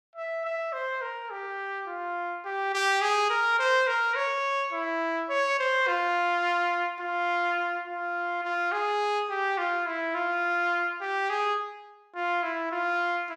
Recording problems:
none

